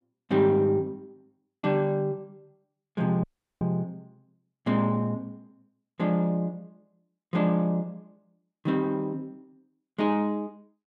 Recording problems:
dropout; at 3 s

